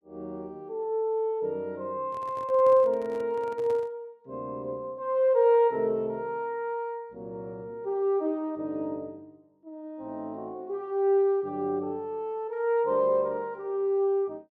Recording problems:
microphone handling noise; from 2 to 4 s; peak -12 dB vs average level

